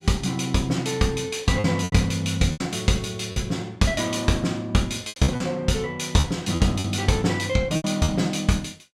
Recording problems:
lost packets; 7% of the sound replaced, filled with repeated pitch periods

